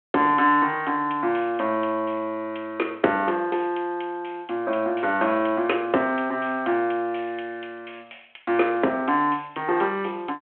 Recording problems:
telephone audio; 240 Hz to 3.3 kHz, G.726

